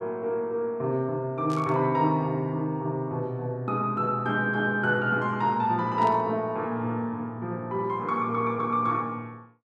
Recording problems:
static burst; at 1.5 s and at 6 s; peak -12 dB vs average level

